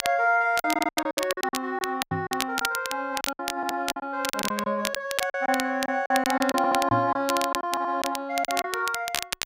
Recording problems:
crackling; vinyl, SNR 6 dB
packet loss; 13% of the sound replaced, filled with silence
audio stuttering; 4 times, first at 0.5 s
knock on the microphone; at 2 s and at 7 s; peak +1 dB vs average level

